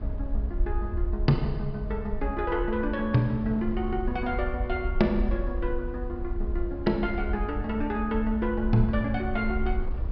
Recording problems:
treble cut off; nothing above 5.5 kHz
low-frequency rumble; below 60 Hz, SNR 5 dB
wind on the microphone; below 340 Hz, SNR 16 dB

